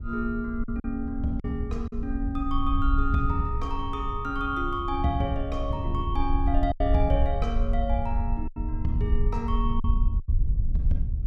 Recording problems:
rumble; below 62 Hz, SNR 1 dB
wind on the microphone; below 100 Hz, SNR 11 dB
packet loss; 4% of the sound replaced, filled with silence

